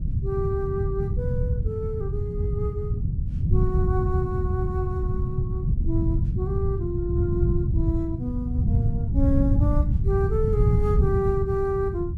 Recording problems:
wind on the microphone; below 130 Hz, SNR -4 dB

